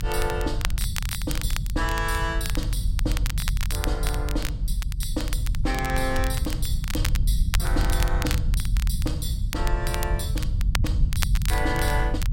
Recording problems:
low-frequency rumble; below 84 Hz, SNR -4 dB
crackling; vinyl, SNR 4 dB

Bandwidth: 16 kHz